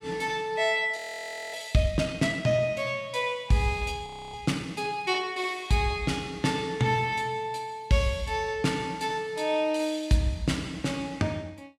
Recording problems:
frozen audio; at 1 s for 0.5 s and at 4 s

